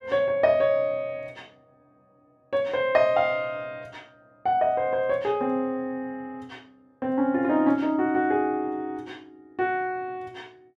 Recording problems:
none

